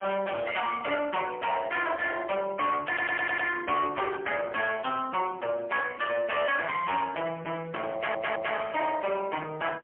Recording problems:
phone line; 300 Hz to 2.9 kHz, AMR-NB, then MP3
distorted audio; hard clipping, signal-to-distortion ratio 7 dB
audio stuttering; at 3 s and at 8 s

